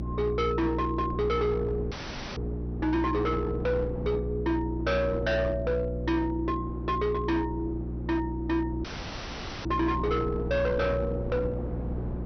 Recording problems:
low-pass filter; nothing above 6 kHz
distortion; hard clipping, uneven, signal-to-distortion ratio 8 dB
electrical hum; 60 Hz, harmonics up to 360 Hz, SNR 5 dB
wind on the microphone; below 470 Hz, SNR 13 dB
audio cutting out; at 2 s and at 9 s for 1 s

